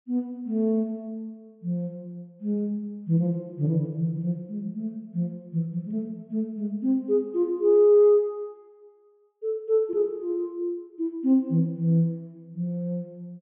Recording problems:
low-pass filter; nothing above 3.4 kHz

